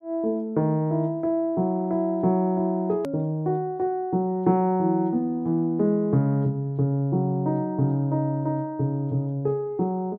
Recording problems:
hard cut with a click; at 3 s

